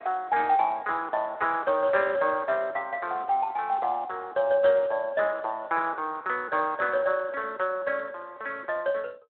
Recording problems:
phone line; 280 Hz to 3.7 kHz, Speex

